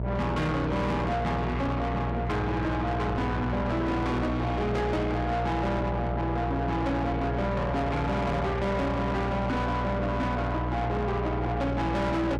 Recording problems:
distorted audio; soft clipping, signal-to-distortion ratio 8 dB
electrical hum; 60 Hz, harmonics up to 840 Hz, SNR 3 dB

